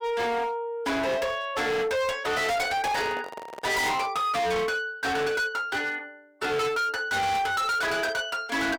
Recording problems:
distorted audio; hard clipping, signal-to-distortion ratio 6 dB
microphone handling noise; from 2.5 to 4 s; peak -4 dB vs average level

